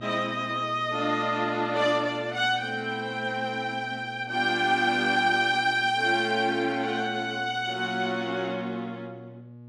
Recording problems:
electrical hum; 60 Hz, harmonics up to 840 Hz, SNR 19 dB

